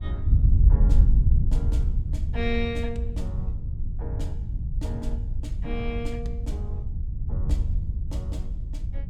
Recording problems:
wind on the microphone; below 80 Hz, SNR -9 dB

